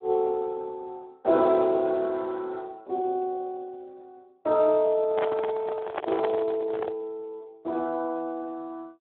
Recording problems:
phone line; 320 Hz to 2 kHz, Speex
handling noise; from 5 to 7 s; peak +3 dB vs average level

